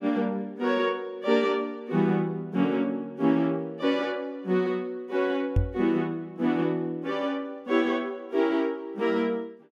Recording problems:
microphone thump; at 5.5 s; peak +6 dB vs average level

